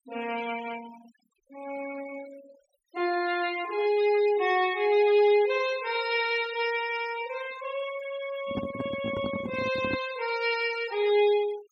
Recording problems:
denoising artefacts; signal-to-artefact ratio 18 dB
handling noise; from 8.5 to 10 s; peak -1 dB vs average level

